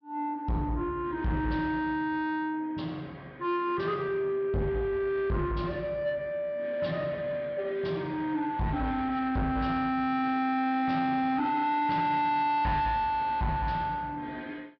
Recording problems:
treble missing; nothing above 5.5 kHz
distorted audio; soft clipping, signal-to-distortion ratio 10 dB

